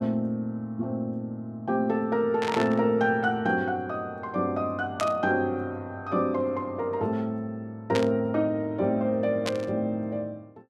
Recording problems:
static burst; 4 times, first at 2.5 s; peak 0 dB vs average level

